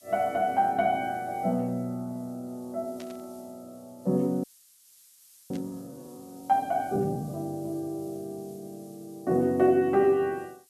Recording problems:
background hiss; SNR 27 dB
static burst; at 3 s and at 5.5 s; peak -14 dB vs average level
frozen audio; at 4.5 s for 1 s

